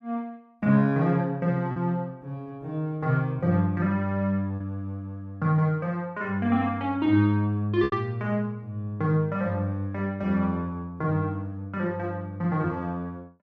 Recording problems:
packet loss; 1.2% of the sound replaced, filled with repeated pitch periods

